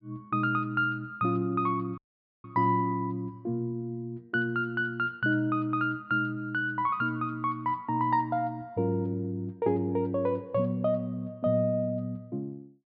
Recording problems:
treble cut off; nothing above 5.1 kHz
dropout; at 2 s

